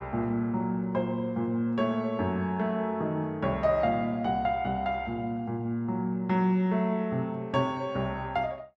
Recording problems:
none

